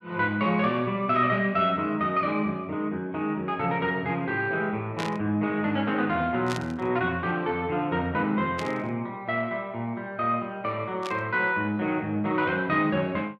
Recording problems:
burst of static; 4 times, first at 5 s; peak -4 dB vs average level

